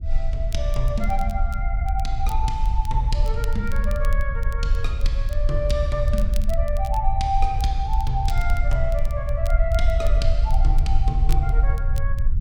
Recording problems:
rumble; below 56 Hz, SNR -4 dB
crackling; vinyl, SNR 19 dB

